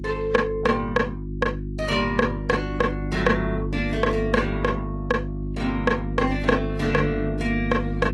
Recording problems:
lossy compression; AAC, then Opus, log-spectral distance 2 dB
hum; 50 Hz, harmonics up to 350 Hz, SNR 5 dB

